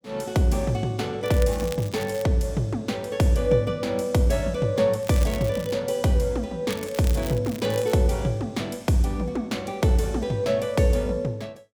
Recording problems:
crackling; from 1 to 2.5 s, at 5 s and from 6.5 to 8 s; loose cable, SNR 16 dB

